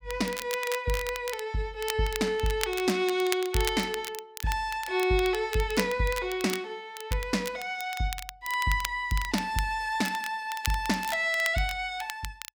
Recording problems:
crackle; vinyl, SNR 10 dB

